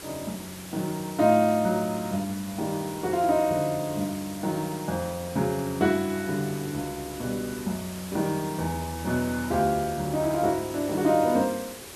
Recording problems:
background hiss; slope -2 dB per octave, SNR 13 dB

